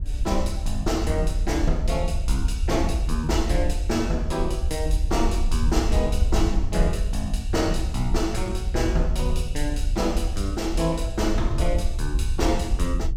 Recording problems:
rumble; below 62 Hz, SNR 3 dB
wind noise; below 64 Hz, SNR 4 dB

